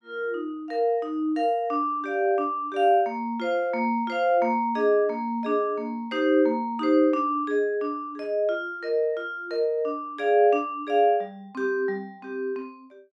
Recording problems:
none

